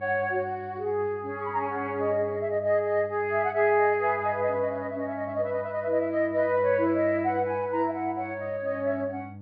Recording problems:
low-pass filter; nothing above 5 kHz
electrical hum; 50 Hz, harmonics up to 600 Hz, SNR 18 dB

